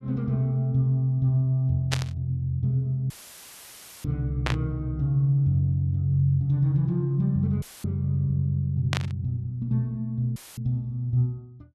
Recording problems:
burst of static; at 2 s, at 4.5 s and at 9 s; peak +3 dB vs average level
audio cutting out; at 3 s for 1 s, at 7.5 s and at 10 s; filled with static

